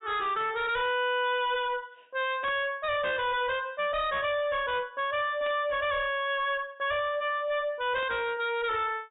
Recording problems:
treble missing; nothing above 4 kHz
distorted audio; hard clipping, signal-to-distortion ratio 7 dB
burst of static; at 2.5 s, at 5.5 s and at 8 s; peak -12 dB vs average level

